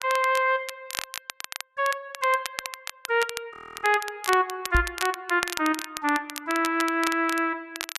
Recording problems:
crackle; vinyl, SNR 10 dB
audio freezing; at 3.5 s
microphone bump; at 5 s; peak +4 dB vs average level

